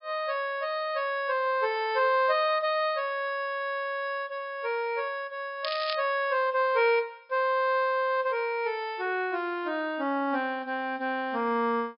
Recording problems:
treble missing; nothing above 5.5 kHz
crackle; at 5.5 s; loose cable, SNR 9 dB

